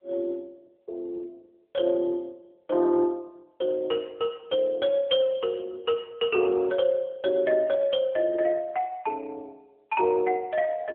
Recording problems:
telephone audio; 300 Hz to 3.5 kHz, AMR-NB

